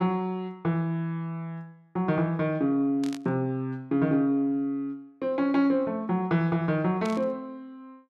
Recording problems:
burst of static; at 3 s and at 7 s; peak -9 dB vs average level

